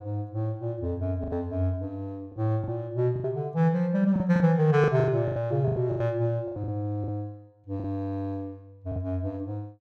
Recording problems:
lost packets; 10% of the sound replaced, filled with the last packet

